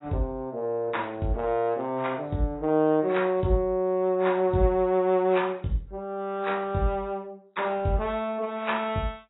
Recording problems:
lossy compression; AAC, log-spectral distance 2 dB, nothing above 3.7 kHz

